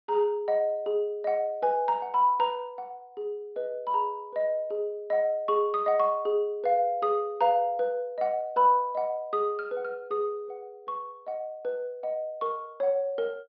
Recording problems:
low-pass filter; nothing above 5.5 kHz

